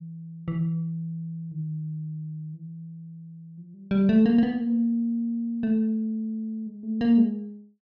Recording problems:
none

